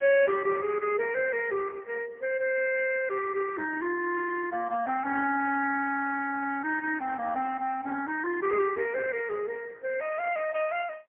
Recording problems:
phone line; 300 Hz to 3.3 kHz, AMR-NB, then MP3

